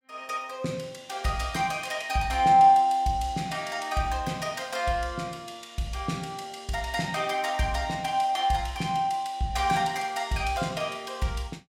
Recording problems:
none

